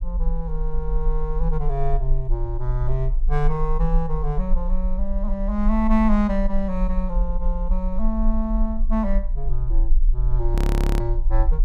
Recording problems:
low-frequency rumble; below 40 Hz, strongest tone 24 Hz, SNR -1 dB
audio freezing; at 11 s

